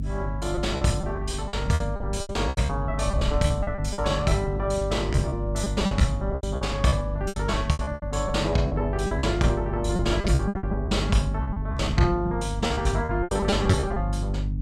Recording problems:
hum; 50 Hz, harmonics up to 300 Hz, SNR 4 dB
wind on the microphone; below 140 Hz, SNR 12 dB
lost packets; 16% of the sound replaced, filled with repeated pitch periods

